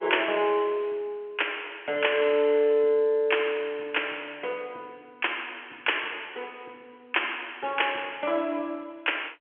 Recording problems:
telephone audio; 300 Hz to 3.3 kHz, G.711

